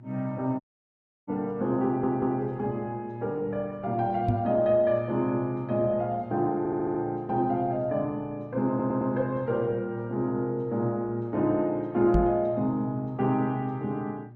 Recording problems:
codec artefacts; Opus, log-spectral distance 2 dB
hum; 60 Hz, harmonics up to 600 Hz, SNR 19 dB
dropout; at 0.5 s for 0.5 s
audio stuttering; at 2 s, at 6.5 s and at 8.5 s
microphone thump; at 4.5 s and at 12 s; peak +5 dB vs average level

